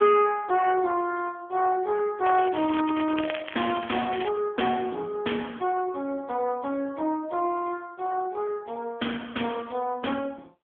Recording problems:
telephone audio; 190 Hz to 3.3 kHz, AMR-NB
crackle; from 2.5 to 4.5 s; loose cable, SNR 12 dB

